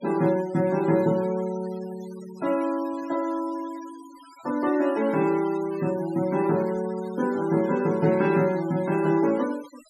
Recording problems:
noise reduction artefacts; signal-to-artefact ratio 20 dB

